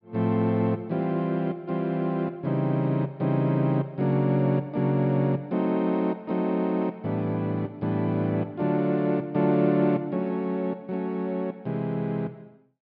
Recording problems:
treble cut off; nothing above 5.5 kHz

